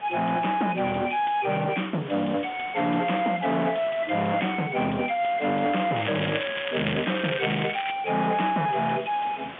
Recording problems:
phone line; 190 Hz to 3.4 kHz, G.711
distorted audio; hard clipping, uneven, signal-to-distortion ratio 8 dB
hiss; SNR 15 dB
crackling; from 6 to 8 s; loose cable, SNR 6 dB

